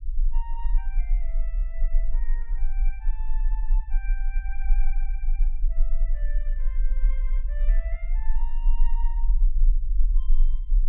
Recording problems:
treble missing; nothing above 4 kHz
low-frequency rumble; below 34 Hz, strongest tone 18 Hz, SNR -20 dB

